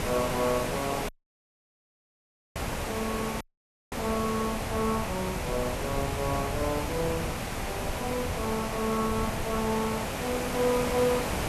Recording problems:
hiss; SNR 2 dB
wind on the microphone; below 130 Hz, SNR 9 dB
audio cutting out; at 1 s for 1.5 s and at 3.5 s for 0.5 s

